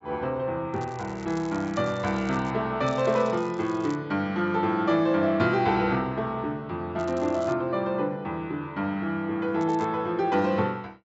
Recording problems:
low-pass filter; nothing above 7.6 kHz
crackling; 4 times, first at 0.5 s; loose cable, SNR 24 dB

